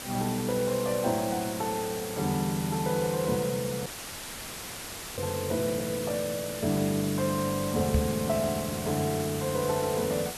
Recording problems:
hiss; slope -2 dB per octave, SNR 8 dB
audio cutting out; at 4 s for 1.5 s
microphone bump; at 8 s; peak +5 dB vs average level

